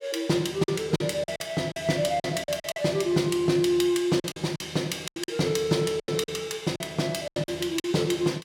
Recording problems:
lost packets; 11% of the sound replaced, filled with silence

